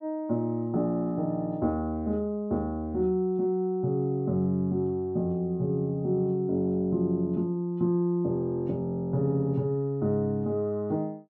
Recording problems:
none

